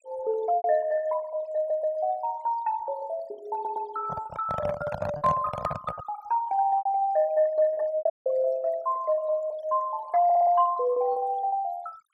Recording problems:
noise reduction artefacts; signal-to-artefact ratio 20 dB
packet loss; 5% of the sound replaced, filled with repeated pitch periods
stutter; at 1.5 s, at 3.5 s and at 10 s
microphone handling noise; from 4 to 6 s; peak 0 dB vs average level
audio cutting out; at 8 s

